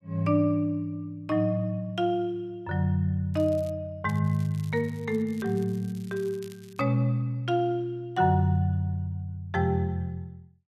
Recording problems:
crackle; at 3.5 s and from 4 to 7 s; loose cable, SNR 26 dB

